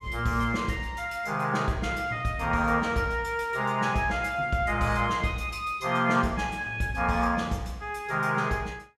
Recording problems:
none

